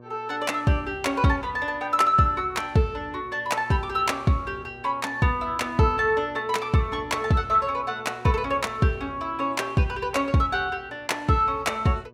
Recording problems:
electrical hum; 60 Hz, harmonics up to 1.2 kHz, SNR 24 dB

